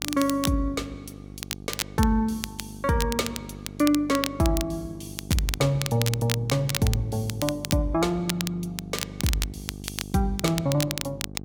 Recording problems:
hum; 50 Hz, harmonics up to 800 Hz, SNR 14 dB
crackle; vinyl, SNR 7 dB

